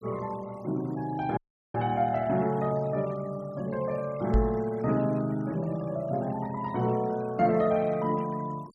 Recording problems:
denoising artefacts; signal-to-artefact ratio 24 dB
audio cutting out; at 1.5 s
microphone bump; at 4.5 s; peak +6 dB vs average level

